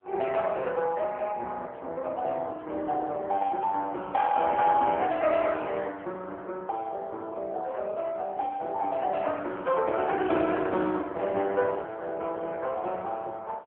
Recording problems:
phone line; 300 Hz to 3.5 kHz, AMR-NB

